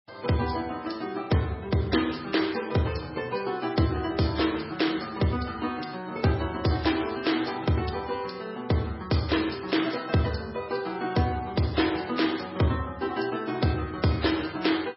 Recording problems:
codec artefacts; MP3, log-spectral distance 6 dB, nothing above 5.5 kHz

